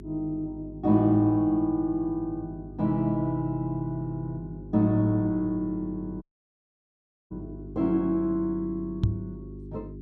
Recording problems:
electrical hum; 50 Hz, harmonics up to 400 Hz, SNR 15 dB
dropout; at 6 s for 1 s
knock on the microphone; at 9 s; peak +6 dB vs average level

